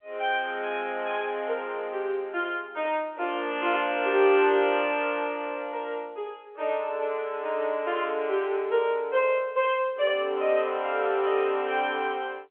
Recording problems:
phone line; 340 Hz to 3.4 kHz, G.711

